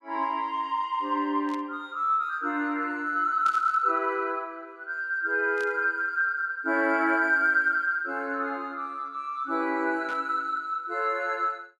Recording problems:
burst of static; 4 times, first at 1.5 s; peak -12 dB vs average level

